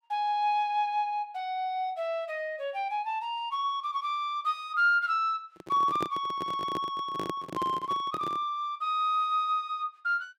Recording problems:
microphone handling noise; from 5.5 to 8.5 s; peak 0 dB vs average level

